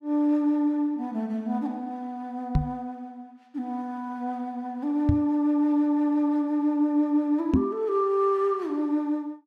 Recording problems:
microphone bump; at 2.5 s, at 5 s and at 7.5 s; peak +8 dB vs average level

